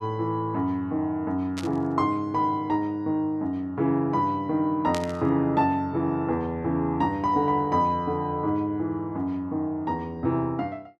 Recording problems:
burst of static; at 1.5 s and at 5 s; peak -5 dB vs average level

